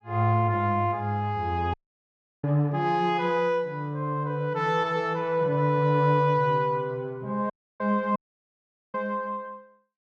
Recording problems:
dropout; at 1.5 s for 0.5 s, at 7.5 s and at 8 s for 1 s

